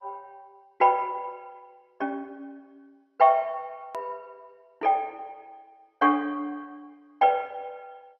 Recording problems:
lossy compression; MP2, then MP2, log-spectral distance 2 dB
hard cut with a click; at 4 s

